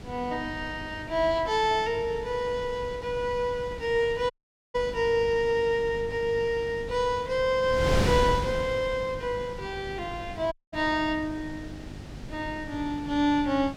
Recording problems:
hum; 50 Hz, harmonics up to 800 Hz, SNR 20 dB
wind on the microphone; below 430 Hz, SNR 10 dB
dropout; at 4.5 s and at 11 s

